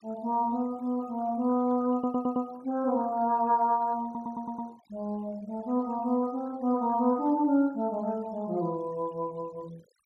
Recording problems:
denoising artefacts; signal-to-artefact ratio 27 dB
stutter; at 2 s and at 4 s

